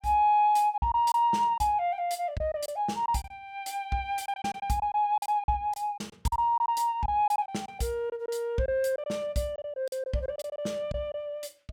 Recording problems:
packet loss; 9% of the sound replaced, filled with silence

